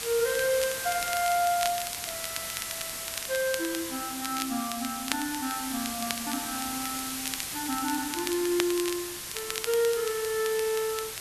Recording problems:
hiss; slope +1 dB per octave, SNR 4 dB
crackle; vinyl, SNR 8 dB

